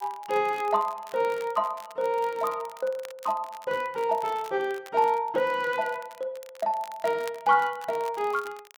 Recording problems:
crackling; vinyl, SNR 22 dB

